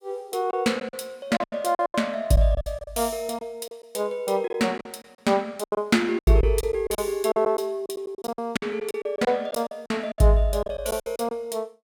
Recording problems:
lost packets; 14% of the sound replaced, filled with silence

